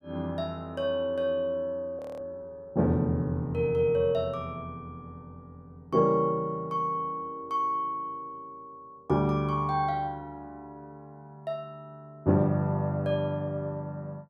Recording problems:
audio freezing; at 2 s

